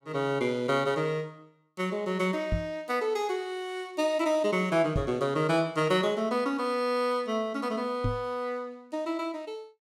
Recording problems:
microphone thump; at 2.5 s, at 5 s and at 8 s; peak +3 dB vs average level

